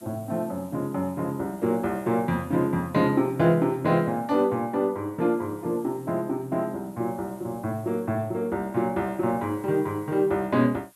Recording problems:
background hiss; SNR 27 dB

